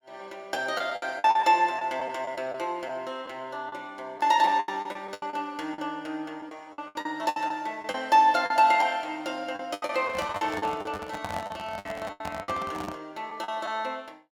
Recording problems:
lost packets; 12% of the sound replaced, filled with the last packet
microphone handling noise; from 10 to 13 s; peak -4 dB vs average level

